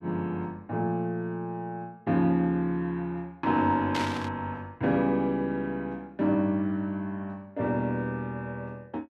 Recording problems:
static burst; at 4 s; peak 0 dB vs average level

